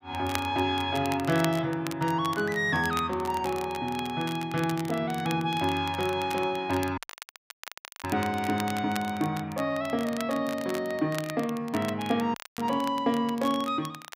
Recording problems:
crackling; vinyl, SNR 14 dB
dropout; at 7 s for 1 s and at 12 s

